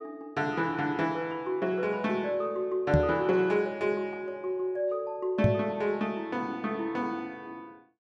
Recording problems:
microphone bump; at 3 s and at 5.5 s; peak +9 dB vs average level

